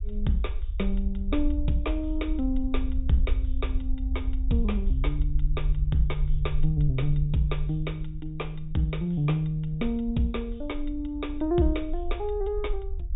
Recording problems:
treble cut off; nothing above 4 kHz
low-frequency rumble; below 56 Hz, SNR 3 dB

